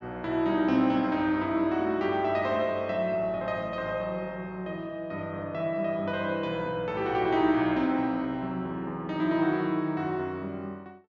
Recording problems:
treble cut off; nothing above 7.4 kHz

